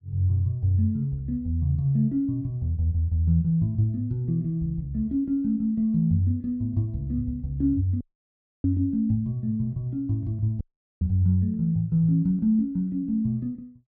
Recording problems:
audio cutting out; at 8 s for 0.5 s and at 11 s

